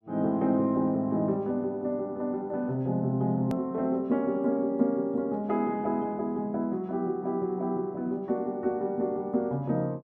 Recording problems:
hard cut with a click; at 3.5 s

